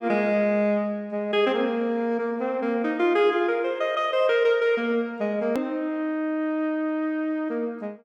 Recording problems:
hard cut with a click; at 5.5 s

